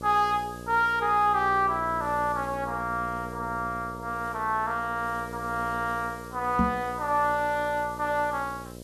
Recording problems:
hum; 60 Hz, harmonics up to 1.1 kHz, SNR 13 dB
hiss; SNR 24 dB
knock on the microphone; at 6.5 s; peak +4 dB vs average level

